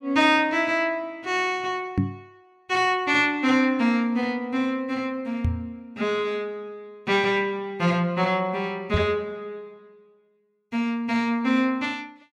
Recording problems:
microphone bump; at 2 s, at 5.5 s and at 9 s; peak +4 dB vs average level

